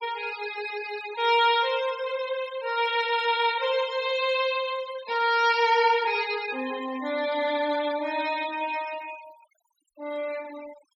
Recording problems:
denoising artefacts; signal-to-artefact ratio 18 dB

